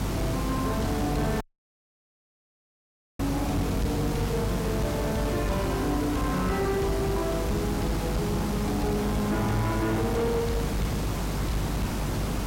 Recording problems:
distorted audio; soft clipping, signal-to-distortion ratio 10 dB
electrical hum; 50 Hz, harmonics up to 500 Hz, SNR 3 dB
background hiss; slope -6 dB per octave, SNR 3 dB
audio cutting out; at 1.5 s for 2 s

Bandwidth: 16 kHz